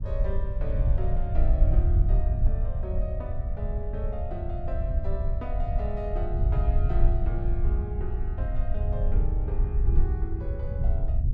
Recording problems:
rumble; below 68 Hz, SNR -10 dB

